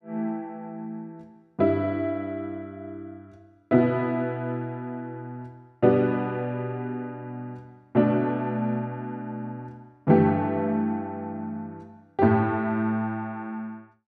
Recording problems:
none

